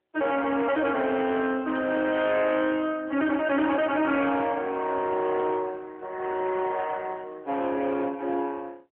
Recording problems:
phone line; 240 Hz to 3.3 kHz, AMR-NB
distorted audio; hard clipping, uneven, signal-to-distortion ratio 10 dB

